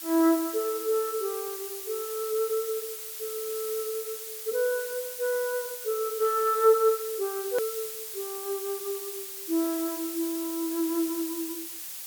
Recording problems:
background hiss; slope +3 dB per octave, SNR 6 dB
click at an edit; at 7.5 s

